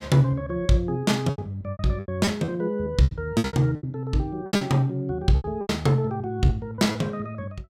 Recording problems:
lost packets; 13% of the sound replaced, filled with repeated pitch periods

